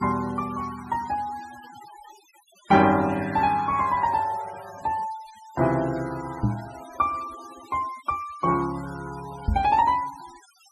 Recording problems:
denoising artefacts; signal-to-artefact ratio 20 dB
microphone thump; at 6.5 s and at 9.5 s; peak +5 dB vs average level

